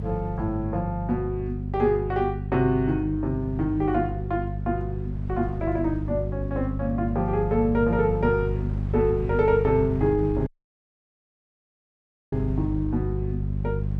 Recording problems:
electrical hum; 50 Hz, harmonics up to 400 Hz, SNR 4 dB
wind noise; below 170 Hz, SNR 16 dB
dropout; at 10 s for 2 s

